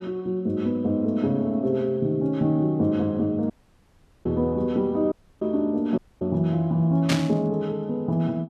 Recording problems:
dropout; at 3.5 s for 1 s, at 5 s and at 6 s
burst of static; at 7 s; peak +1 dB vs average level

